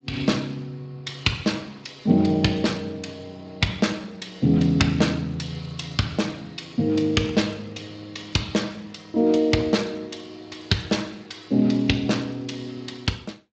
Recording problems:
lossy codec; Speex, log-spectral distance 5 dB, nothing above 7.6 kHz

